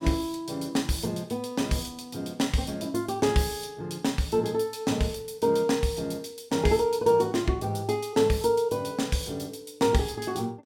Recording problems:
none

